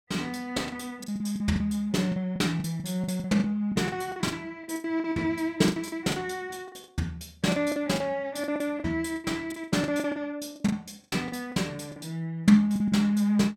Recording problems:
packet loss; 15% of the sound replaced, filled with the last packet

